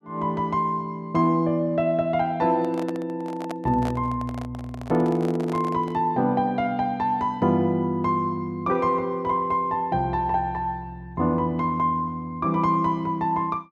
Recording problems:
microphone handling noise; from 2.5 to 6 s; peak -6 dB vs average level

